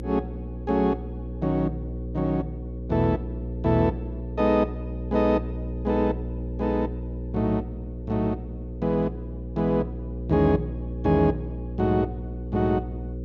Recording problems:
hum; 60 Hz, harmonics up to 540 Hz, SNR 8 dB

